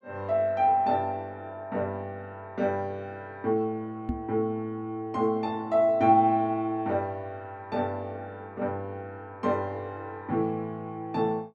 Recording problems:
microphone bump; at 4 s; peak +2 dB vs average level

